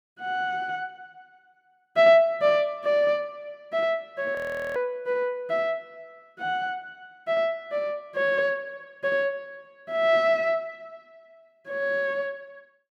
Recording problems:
frozen audio; at 4.5 s

